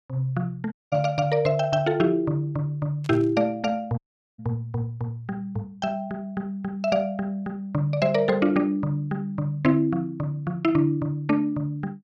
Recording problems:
audio cutting out; at 0.5 s and at 4 s
static burst; at 3 s; peak -16 dB vs average level

